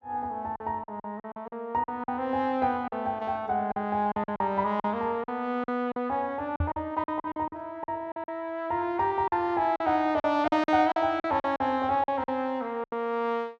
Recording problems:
lost packets; 12% of the sound replaced, filled with silence
microphone bump; at 6.5 s; peak +3 dB vs average level

